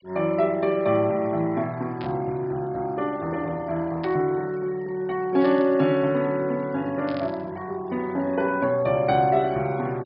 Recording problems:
low-pass filter; nothing above 5.5 kHz
noise reduction artefacts; signal-to-artefact ratio 25 dB
burst of static; 4 times, first at 2 s; peak -12 dB vs average level

